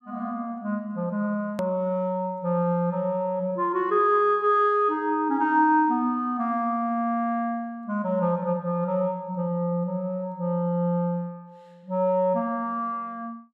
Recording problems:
click at an edit; at 1.5 s

